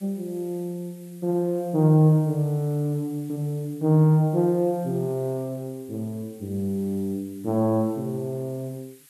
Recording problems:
hiss; SNR 27 dB

